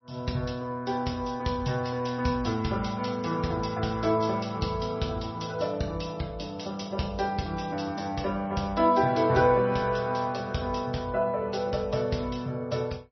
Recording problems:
lossy compression; MP3, log-spectral distance 4 dB, nothing above 5.8 kHz

